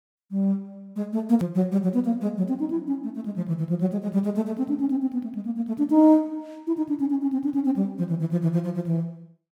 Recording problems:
edit click; at 1.5 s

